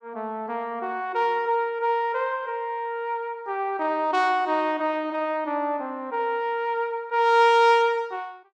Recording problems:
none

